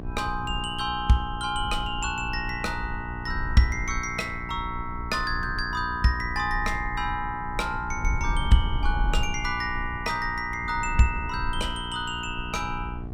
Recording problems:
mains hum; 60 Hz, harmonics up to 1.2 kHz, SNR 12 dB
rumble; below 66 Hz, SNR 8 dB

